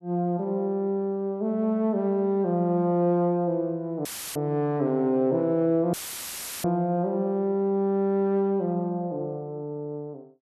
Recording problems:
audio cutting out; at 4 s and at 6 s for 0.5 s; filled with static

